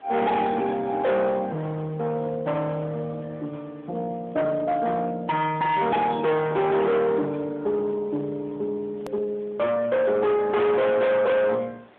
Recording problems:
phone line; 990 Hz to 3.4 kHz, AMR-NB
distorted audio; hard clipping, signal-to-distortion ratio 6 dB
background hiss; SNR 29 dB
edit click; at 9 s

